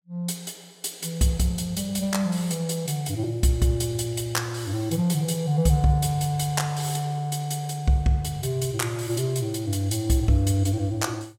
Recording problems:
none

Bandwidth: 16 kHz